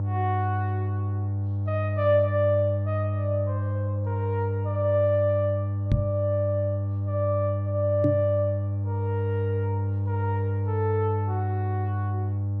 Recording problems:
hum; 50 Hz, harmonics up to 600 Hz, SNR -1 dB
knock on the microphone; at 6 s and at 8 s; peak +8 dB vs average level

